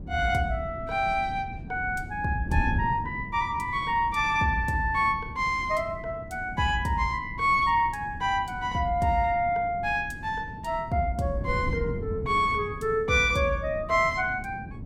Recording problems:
wind noise; below 200 Hz, SNR 12 dB

